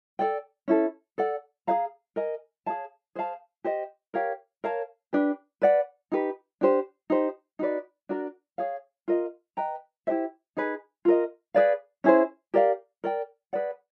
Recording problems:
none

